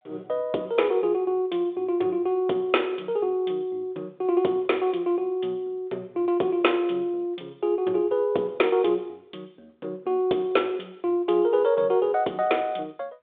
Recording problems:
telephone audio; 260 Hz to 3.6 kHz, G.726

